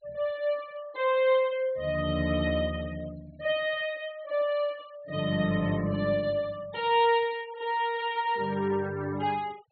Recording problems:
treble missing; nothing above 4.4 kHz
noise reduction artefacts; signal-to-artefact ratio 23 dB

